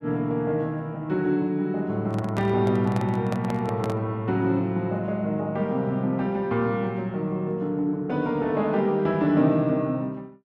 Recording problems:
microphone handling noise; from 2 to 4 s; peak -3 dB vs average level

